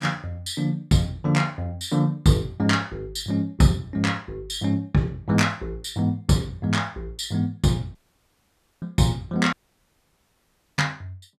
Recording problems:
audio cutting out; at 8 s for 1 s and at 9.5 s for 1.5 s

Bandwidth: 14.5 kHz